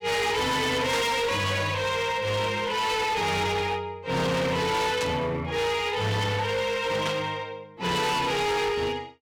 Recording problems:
distorted audio; hard clipping, uneven, signal-to-distortion ratio 7 dB
burst of static; at 1 s, at 5 s and at 7 s; peak -2 dB vs average level

